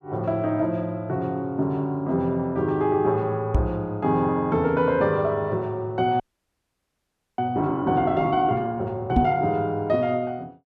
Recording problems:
microphone thump; at 3.5 s and at 9 s; peak +7 dB vs average level
frozen audio; at 6 s for 1 s

